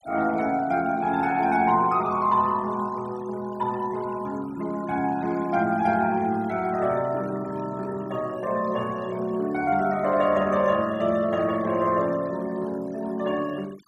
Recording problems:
denoising artefacts; signal-to-artefact ratio 22 dB

